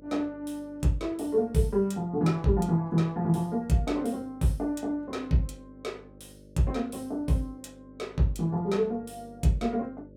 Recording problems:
hum; 50 Hz, harmonics up to 600 Hz, SNR 24 dB

